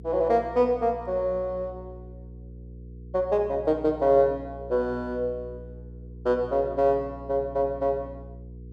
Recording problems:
electrical hum; 60 Hz, harmonics up to 480 Hz, SNR 17 dB

